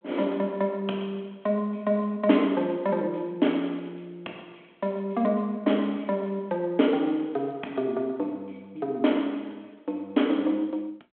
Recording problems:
phone line; 220 Hz to 3.4 kHz, G.726

